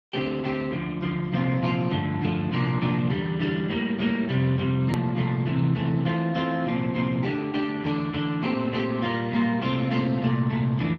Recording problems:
lossy compression; Speex, log-spectral distance 3 dB, nothing above 13.1 kHz
edit click; at 5 s

